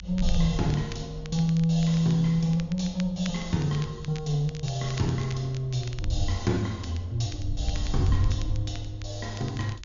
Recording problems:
treble cut off; nothing above 7.1 kHz
wind noise; below 74 Hz, SNR 8 dB
crackling; vinyl, SNR 19 dB

